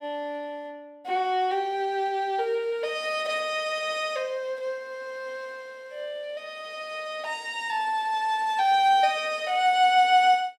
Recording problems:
none

